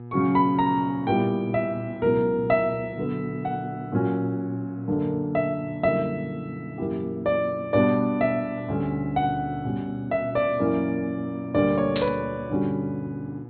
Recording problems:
treble missing; nothing above 4.3 kHz
hum; 60 Hz, harmonics up to 840 Hz, SNR 16 dB
static burst; at 12 s; peak -2 dB vs average level

